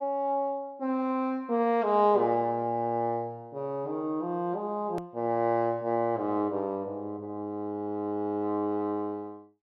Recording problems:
click at an edit; at 5 s

